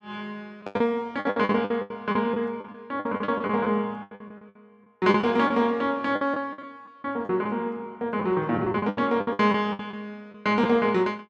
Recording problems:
lost packets; 15% of the sound replaced, filled with the last packet

